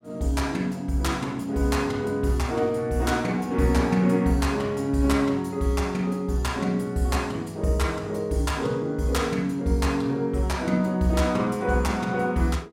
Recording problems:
none

